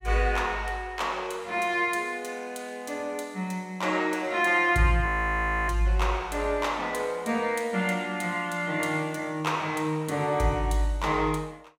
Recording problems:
frozen audio; at 5 s for 0.5 s

